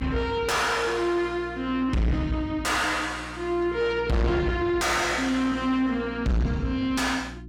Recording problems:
distortion; soft clipping, signal-to-distortion ratio 6 dB
hum; 60 Hz, harmonics up to 360 Hz, SNR 16 dB

